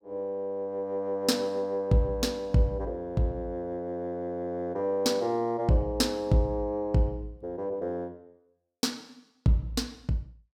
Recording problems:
none

